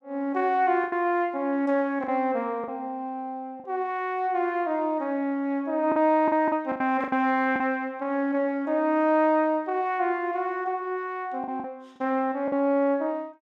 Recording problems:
packet loss; 5% of the sound replaced, filled with the last packet

